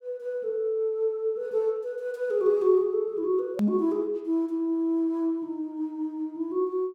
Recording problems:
click at an edit; at 3.5 s

